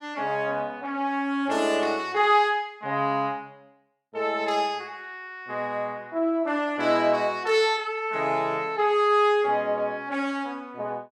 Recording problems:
none

